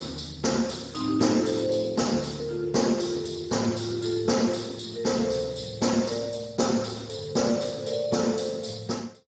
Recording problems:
lossy codec; Speex, log-spectral distance 6 dB, nothing above 7.3 kHz

